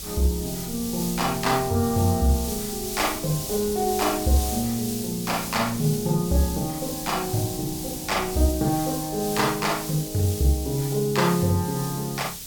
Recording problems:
background hiss; slope +5 dB per octave, SNR 7 dB
wind noise; below 190 Hz, SNR 19 dB

